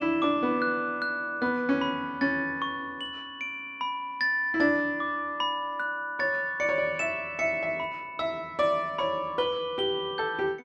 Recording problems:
none

